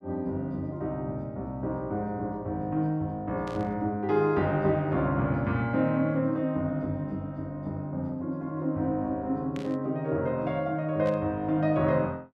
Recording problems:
static burst; at 3.5 s, at 9.5 s and at 11 s; peak -12 dB vs average level

